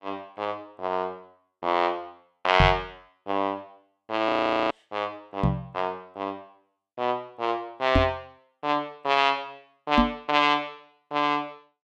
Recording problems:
knock on the microphone; 4 times, first at 2.5 s; peak +8 dB vs average level
frozen audio; at 4.5 s

